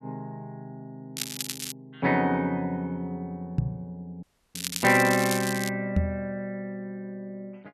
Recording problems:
crackling; at 1 s and from 4.5 to 5.5 s; loose cable, SNR 6 dB
microphone thump; at 3.5 s and at 6 s; peak +6 dB vs average level
audio cutting out; at 4 s

